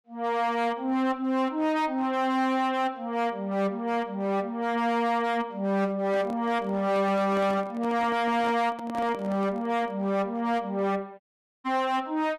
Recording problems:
distorted audio; hard clipping, signal-to-distortion ratio 10 dB
handling noise; from 6 to 10 s; peak -7 dB vs average level
dropout; at 11 s

